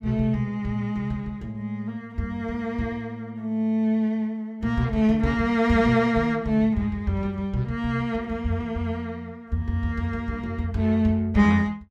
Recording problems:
none

